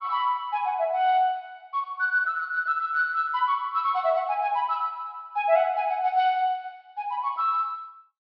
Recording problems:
low-pass filter; nothing above 5.5 kHz

